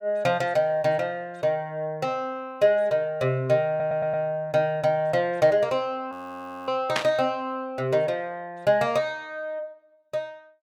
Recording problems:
stutter; at 3.5 s
audio freezing; at 6 s for 0.5 s
burst of static; at 7 s; peak +4 dB vs average level

